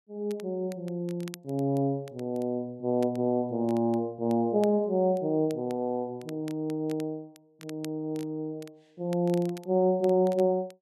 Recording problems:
crackling; vinyl, SNR 24 dB

